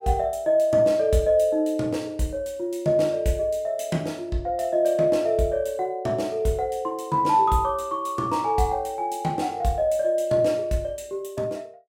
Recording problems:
none

